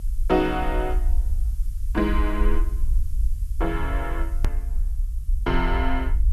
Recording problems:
background hiss; SNR 27 dB
low-frequency rumble; below 54 Hz, SNR 1 dB
edit click; at 4.5 s

